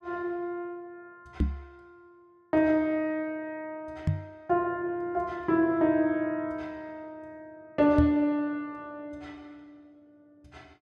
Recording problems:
knock on the microphone; at 1.5 s, at 4 s and at 8 s; peak +5 dB vs average level

